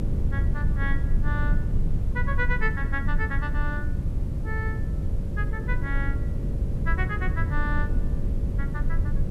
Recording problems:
mains hum; 50 Hz, harmonics up to 600 Hz, SNR 9 dB
background hiss; slope -4 dB per octave, SNR 24 dB
low-frequency rumble; below 96 Hz, strongest tone 22 Hz, SNR -5 dB

